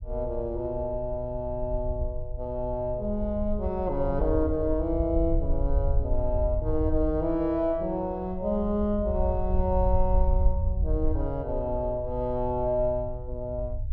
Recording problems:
low-frequency rumble; below 66 Hz, SNR 3 dB

